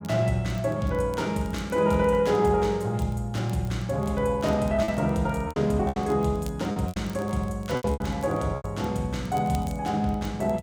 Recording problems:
crackle; vinyl, SNR 27 dB
packet loss; 5% of the sound replaced, filled with repeated pitch periods

